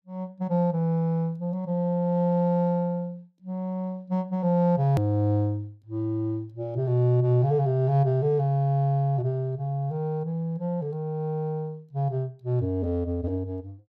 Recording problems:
hard cut with a click; at 5 s

